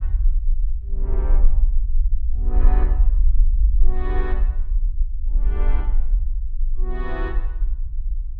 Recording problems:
rumble; below 44 Hz, strongest tone 20 Hz, SNR -12 dB

